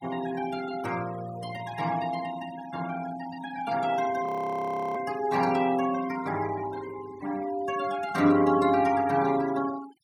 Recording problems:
denoising artefacts; signal-to-artefact ratio 18 dB
frozen audio; at 4.5 s for 0.5 s

